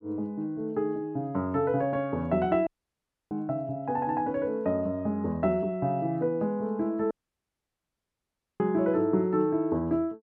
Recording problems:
audio cutting out; at 2.5 s for 0.5 s and at 7 s for 1.5 s

